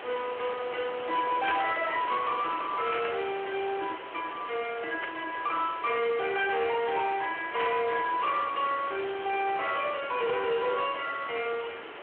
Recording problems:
telephone audio; 280 Hz to 3.3 kHz, Speex
distorted audio; soft clipping, signal-to-distortion ratio 11 dB
hiss; SNR 11 dB
burst of static; 4 times, first at 1.5 s; peak 0 dB vs average level

